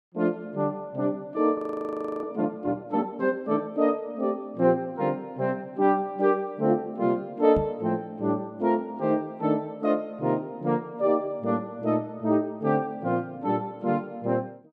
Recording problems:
audio freezing; at 1.5 s for 0.5 s
microphone bump; at 7.5 s; peak -1 dB vs average level

